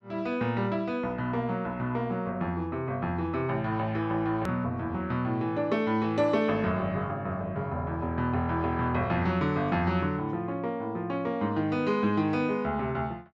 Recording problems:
hard cut with a click; at 4.5 s

